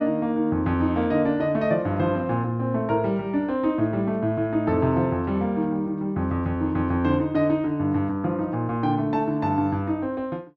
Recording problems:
none

